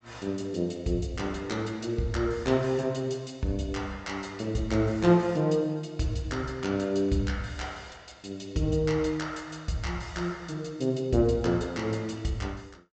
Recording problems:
treble missing; nothing above 8 kHz

